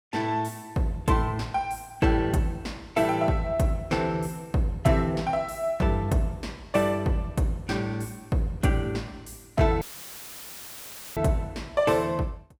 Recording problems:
audio cutting out; at 10 s for 1.5 s; filled with static

